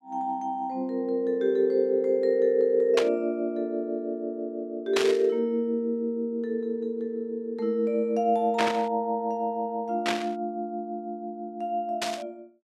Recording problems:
burst of static; 5 times, first at 3 s; peak +4 dB vs average level

